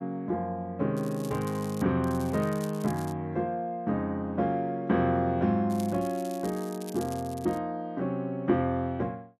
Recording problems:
crackle; at 1 s, from 2 to 3 s and from 5.5 to 7.5 s; loose cable, SNR 19 dB

